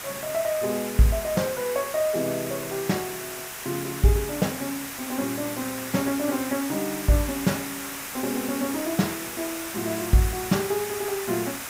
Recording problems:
hiss; SNR 6 dB

